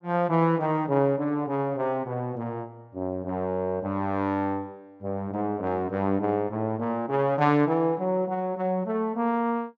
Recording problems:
treble missing; nothing above 8 kHz

